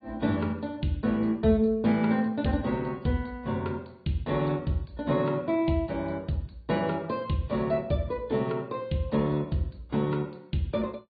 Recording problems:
treble missing; nothing above 4.5 kHz
lossy compression; AAC, log-spectral distance 2 dB

